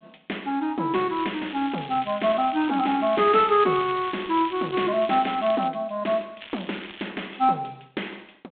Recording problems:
phone line; 240 Hz to 3.9 kHz, G.726
crackling; from 1 to 5.5 s and at 6.5 s; loose cable, SNR 16 dB

